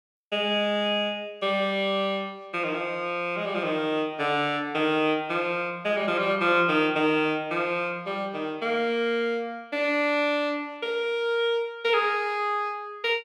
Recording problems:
none

